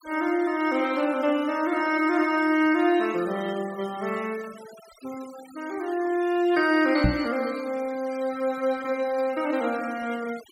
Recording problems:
denoising artefacts; signal-to-artefact ratio 20 dB
knock on the microphone; at 7 s; peak +6 dB vs average level

